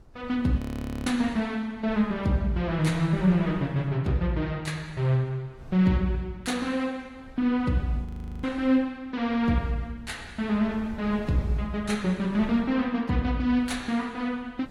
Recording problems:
lossy codec; AAC, log-spectral distance 2 dB, nothing above 16.6 kHz
wind on the microphone; below 160 Hz, SNR 20 dB
audio freezing; at 0.5 s and at 8 s

